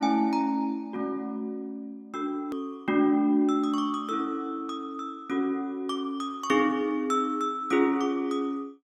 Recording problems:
edit click; at 2.5 s

